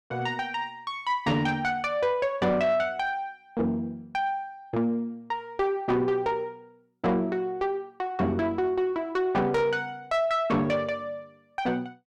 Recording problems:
distortion; soft clipping, signal-to-distortion ratio 11 dB

